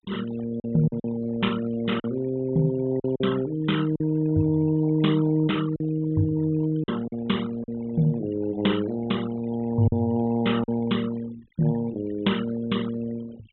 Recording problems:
treble missing; nothing above 3.5 kHz
noise reduction artefacts; signal-to-artefact ratio 17 dB
packet loss; 4% of the sound replaced, filled with silence

